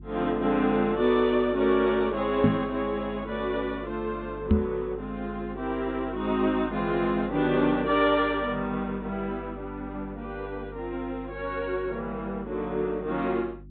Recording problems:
treble cut off; nothing above 4 kHz
hum; 50 Hz, harmonics up to 350 Hz, SNR 17 dB
microphone thump; at 2.5 s and at 4.5 s; peak +9 dB vs average level

